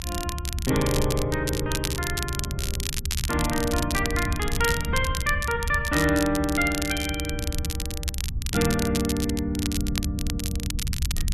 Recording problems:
low-frequency rumble; below 98 Hz, SNR 5 dB
crackle; vinyl, SNR 6 dB

